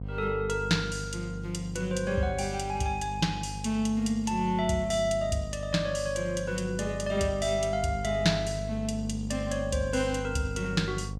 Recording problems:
electrical hum; 50 Hz, harmonics up to 550 Hz, SNR 8 dB

